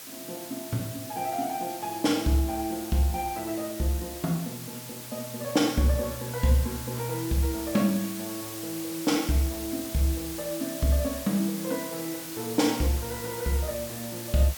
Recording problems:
hiss; slope 0 dB per octave, SNR 9 dB

